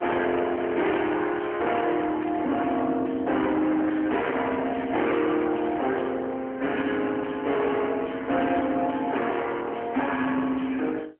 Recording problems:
phone line; 240 Hz to 3.3 kHz, AMR-NB
distortion; hard clipping, uneven, signal-to-distortion ratio 7 dB

